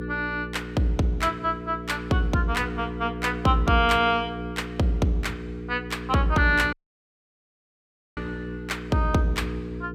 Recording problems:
hum; 60 Hz, harmonics up to 480 Hz, SNR 10 dB
dropout; at 6.5 s for 1.5 s

